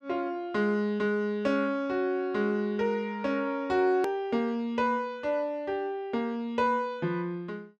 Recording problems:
edit click; at 4 s

